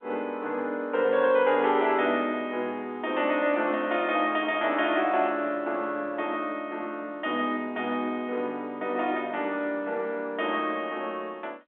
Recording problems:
telephone audio; 260 Hz to 3.6 kHz, G.711

